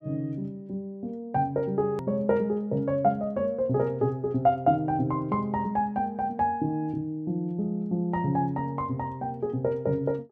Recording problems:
hard cut with a click; at 2 s

